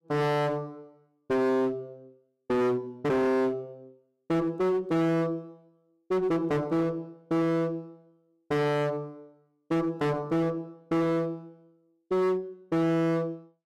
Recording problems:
distorted audio; hard clipping, uneven, signal-to-distortion ratio 6 dB

